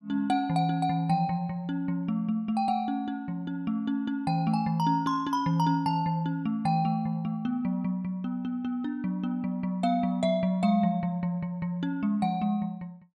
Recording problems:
none

